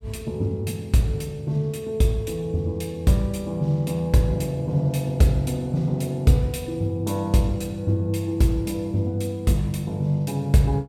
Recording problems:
none

